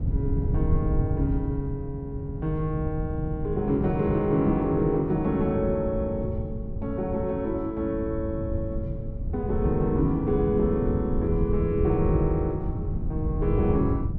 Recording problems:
wind noise; below 130 Hz, SNR 4 dB

